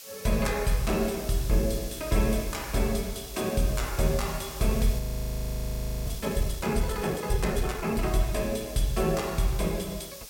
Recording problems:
hiss; SNR 13 dB
audio freezing; at 5 s for 1 s

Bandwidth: 16.5 kHz